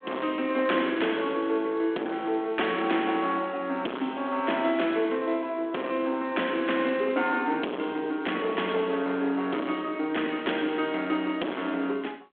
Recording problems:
phone line; 240 Hz to 3.4 kHz, G.726
distortion; hard clipping, uneven, signal-to-distortion ratio 10 dB

